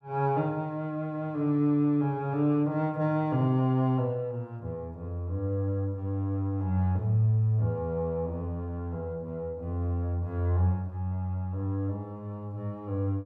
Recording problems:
none

